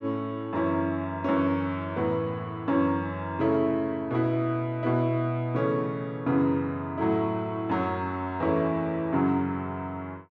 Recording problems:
none

